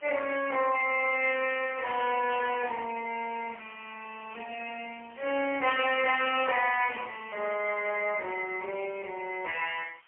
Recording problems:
telephone audio; 320 Hz to 3.1 kHz, AMR-NB, then MP3
background hiss; SNR 28 dB

